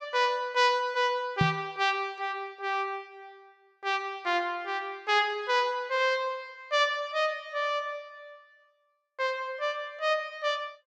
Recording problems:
microphone thump; at 1.5 s; peak +6 dB vs average level

